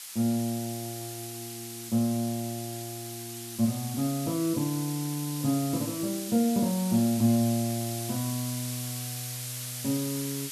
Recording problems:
hiss; slope +5 dB per octave, SNR 7 dB

